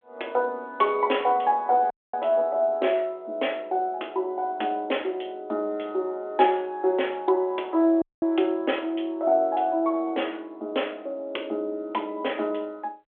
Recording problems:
phone line; 280 Hz to 3.5 kHz, G.726
dropout; at 2 s and at 8 s

